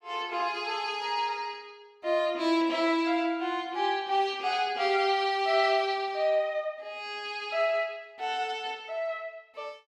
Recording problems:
none

